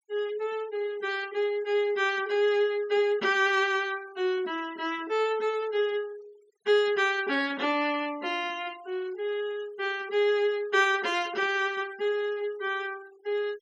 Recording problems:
noise reduction artefacts; signal-to-artefact ratio 23 dB

